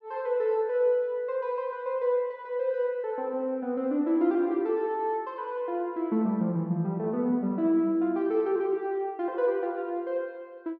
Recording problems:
none

